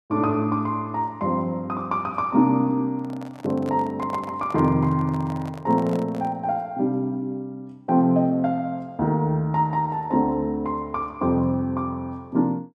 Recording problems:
handling noise; from 3 to 6.5 s; peak -8 dB vs average level

